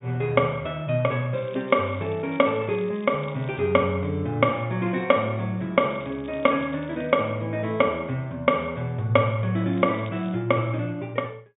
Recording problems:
treble cut off; nothing above 3.7 kHz
crackling; from 1.5 to 3.5 s, from 6 to 7 s and at 9.5 s; loose cable, SNR 27 dB

